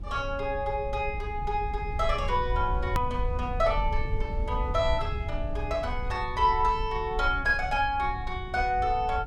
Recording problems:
rumble; below 74 Hz, SNR 6 dB
edit click; at 3 s

